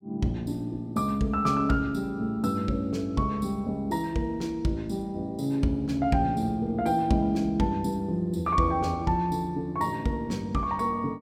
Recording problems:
none

